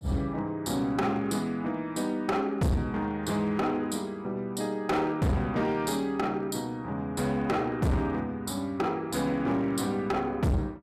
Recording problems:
distortion; hard clipping, signal-to-distortion ratio 6 dB

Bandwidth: 14.5 kHz